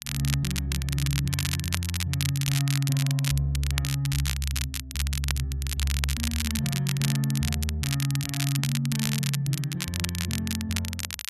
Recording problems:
crackle; vinyl, SNR 4 dB

